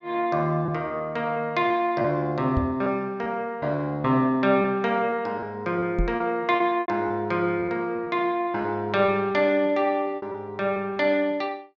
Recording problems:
treble missing; nothing above 8 kHz
lost packets; 7% of the sound replaced, filled with repeated pitch periods
microphone bump; at 2.5 s and at 6 s; peak +2 dB vs average level

